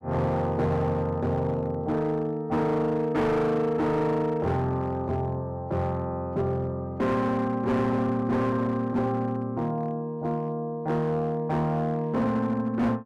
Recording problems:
distorted audio; hard clipping, signal-to-distortion ratio 10 dB

